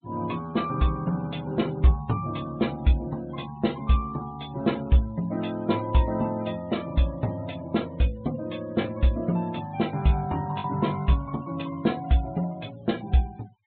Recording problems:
treble cut off; nothing above 4 kHz
denoising artefacts; signal-to-artefact ratio 22 dB
lost packets; 0.4% of the sound replaced, filled with the last packet

